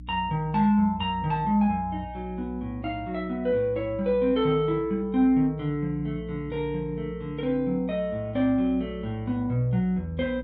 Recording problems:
electrical hum; 60 Hz, harmonics up to 300 Hz, SNR 18 dB

